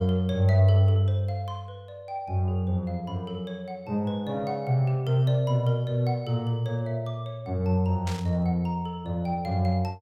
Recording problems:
burst of static; at 8 s; peak -7 dB vs average level

